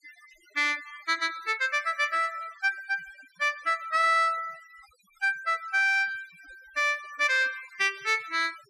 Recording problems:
noise reduction artefacts; signal-to-artefact ratio 23 dB

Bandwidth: 14.5 kHz